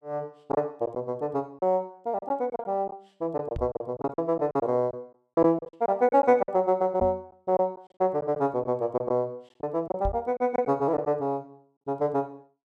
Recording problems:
packet loss; 9% of the sound replaced, filled with silence
microphone bump; at 3.5 s, at 7 s and at 10 s; peak -2 dB vs average level

